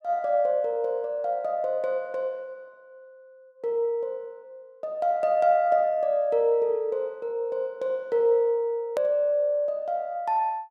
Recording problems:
edit click; at 9 s

